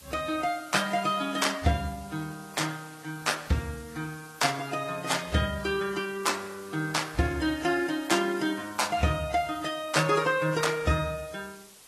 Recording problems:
lossy compression; AAC, then Vorbis, log-spectral distance 7 dB, nothing above 12.7 kHz
hiss; slope 0 dB per octave, SNR 21 dB

